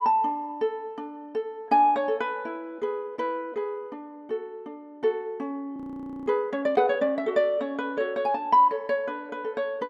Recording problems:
frozen audio; at 6 s for 0.5 s

